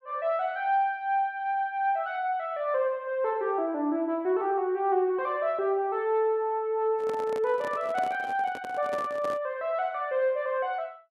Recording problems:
microphone handling noise; from 7 to 9.5 s; peak -6 dB vs average level

